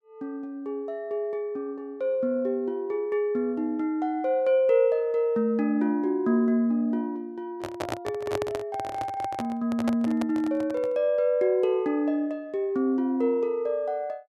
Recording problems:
handling noise; from 7.5 to 11 s; peak 0 dB vs average level

